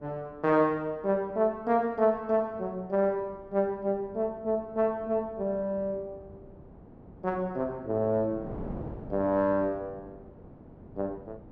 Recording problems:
wind noise; below 440 Hz, SNR 18 dB

